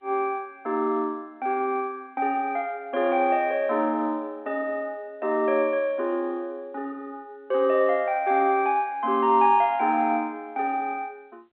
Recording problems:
telephone audio; 260 Hz to 3.4 kHz, G.711

